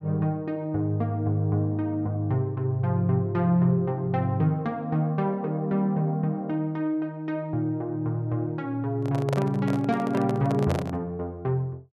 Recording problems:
microphone handling noise; from 9 to 11 s; peak 0 dB vs average level

